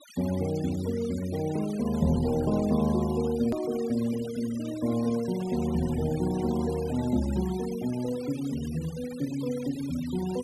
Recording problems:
noise reduction artefacts; signal-to-artefact ratio 17 dB
click at an edit; at 3.5 s

